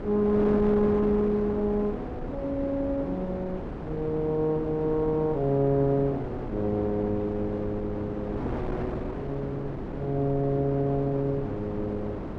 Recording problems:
wind on the microphone; below 520 Hz, SNR 7 dB

